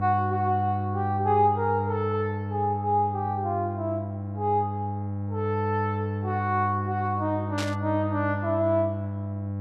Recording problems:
hum; 50 Hz, harmonics up to 800 Hz, SNR 4 dB
static burst; at 7.5 s; peak -2 dB vs average level

